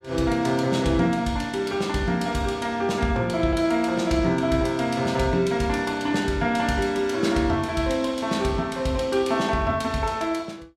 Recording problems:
none

